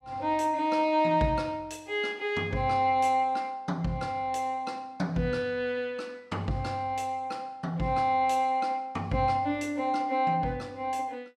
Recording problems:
none

